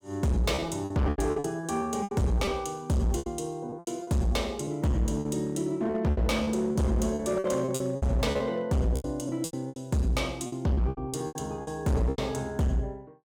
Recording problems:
distortion; hard clipping, signal-to-distortion ratio 7 dB
packet loss; 15% of the sound replaced, filled with repeated pitch periods

